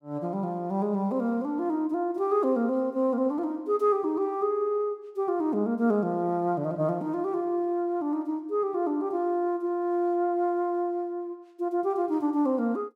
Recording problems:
none

